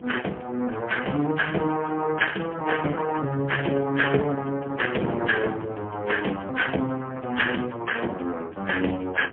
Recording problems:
phone line; 240 Hz to 3.1 kHz, AMR-NB, then MP3
wind on the microphone; below 460 Hz, SNR 14 dB

